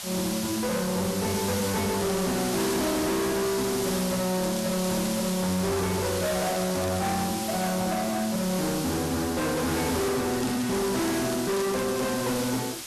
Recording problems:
codec artefacts; MP3, log-spectral distance 3 dB, nothing above 11 kHz
distorted audio; hard clipping, signal-to-distortion ratio 6 dB
hiss; slope +1 dB per octave, SNR 6 dB
crackle; at 2 s, from 4.5 to 7.5 s and from 10 to 12 s; loose cable, SNR 16 dB

